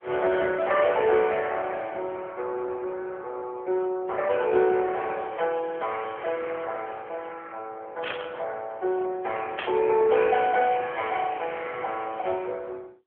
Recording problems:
telephone audio; 320 Hz to 2.5 kHz, AMR-NB
static burst; at 8 s and at 9.5 s; peak -1 dB vs average level

